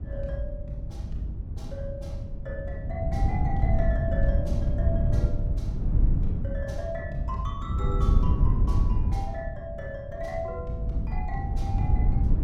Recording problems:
wind on the microphone; below 100 Hz, SNR -7 dB

